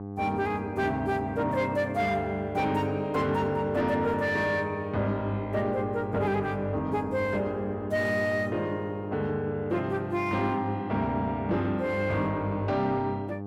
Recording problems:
distortion; soft clipping, signal-to-distortion ratio 11 dB
electrical hum; 50 Hz, harmonics up to 1.2 kHz, SNR 8 dB

